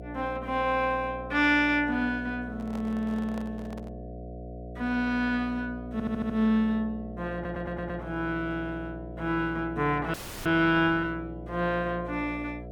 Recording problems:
electrical hum; 60 Hz, harmonics up to 720 Hz, SNR 12 dB
handling noise; from 2.5 to 4 s; peak -10 dB vs average level
audio stuttering; at 6 s and at 7.5 s
audio freezing; at 10 s

